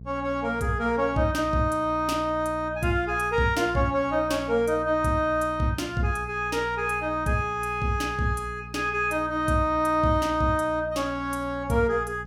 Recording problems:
electrical hum; 60 Hz, harmonics up to 480 Hz, SNR 16 dB

